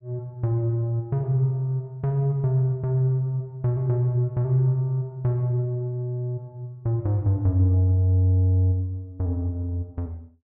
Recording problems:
none

